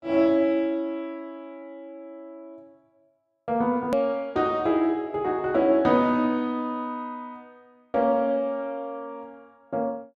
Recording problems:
edit click; at 4 s

